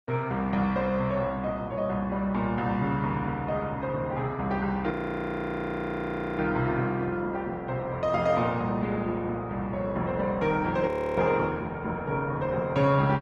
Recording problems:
codec artefacts; Opus, log-spectral distance 2 dB, nothing above 13.1 kHz
frozen audio; at 5 s for 1.5 s and at 11 s

